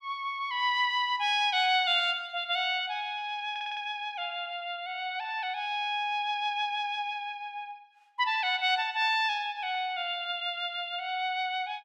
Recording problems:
stutter; at 3.5 s

